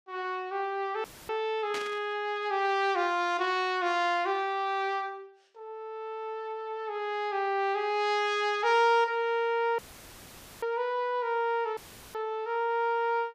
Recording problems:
dropout; at 1 s, at 10 s for 1 s and at 12 s; filled with static
static burst; at 1.5 s; peak -4 dB vs average level

